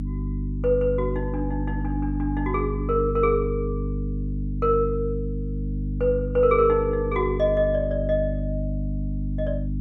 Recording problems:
hum; 50 Hz, harmonics up to 300 Hz, SNR 4 dB

